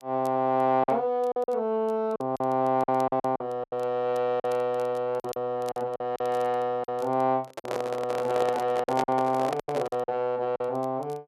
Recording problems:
crackle; vinyl, SNR 29 dB
packet loss; 9% of the sound replaced, filled with silence
handling noise; from 7.5 to 10 s; peak +1 dB vs average level

